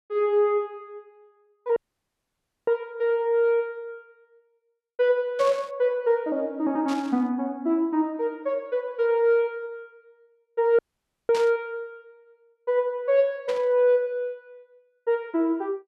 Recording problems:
dropout; at 2 s for 1 s and at 11 s for 0.5 s
burst of static; 4 times, first at 5.5 s; peak -7 dB vs average level

